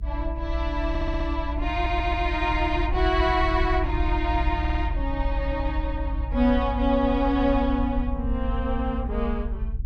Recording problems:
low-frequency rumble; below 60 Hz, SNR 3 dB
stutter; at 1 s, at 1.5 s and at 4.5 s

